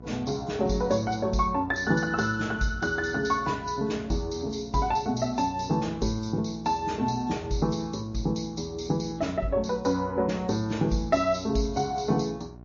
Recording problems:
lossy codec; MP3, log-spectral distance 4 dB, nothing above 6.5 kHz
hum; 60 Hz, harmonics up to 1.1 kHz, SNR 18 dB

